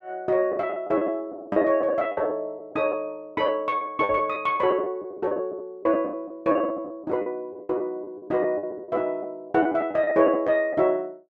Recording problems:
packet loss; 14% of the sound replaced, filled with the last packet
microphone bump; at 4 s; peak -18 dB vs average level

